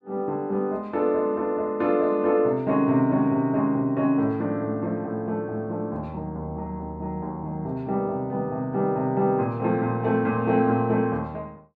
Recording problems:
none

